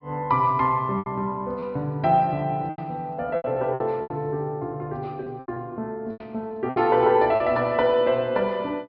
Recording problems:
treble missing; nothing above 5.5 kHz
lost packets; 8% of the sound replaced, filled with repeated pitch periods

